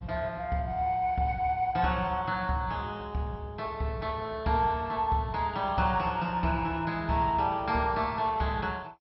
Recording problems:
lossy codec; MP2, log-spectral distance 2 dB, nothing above 5.5 kHz

